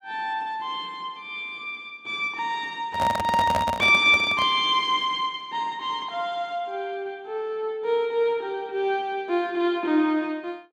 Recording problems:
microphone handling noise; from 3 to 4.5 s; peak +2 dB vs average level

